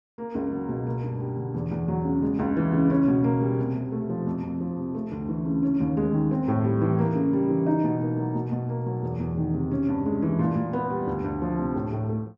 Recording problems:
none

